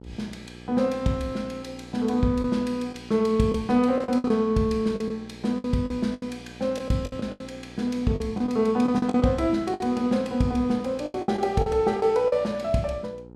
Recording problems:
electrical hum; 60 Hz, harmonics up to 1 kHz, SNR 20 dB
packet loss; 9% of the sound replaced, filled with the last packet

